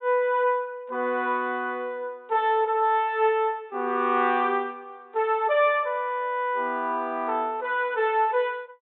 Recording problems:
treble cut off; nothing above 3.8 kHz

